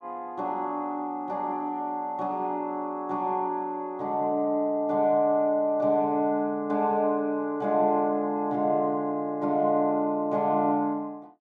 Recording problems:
none

